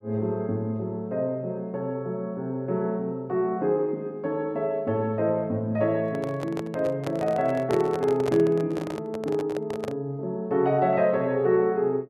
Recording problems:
handling noise; from 6 to 10 s; peak -2 dB vs average level

